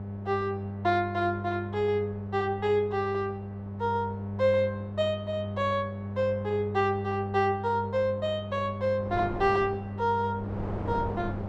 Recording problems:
hum; 50 Hz, harmonics up to 1.1 kHz, SNR 7 dB
wind noise; below 620 Hz, SNR 16 dB

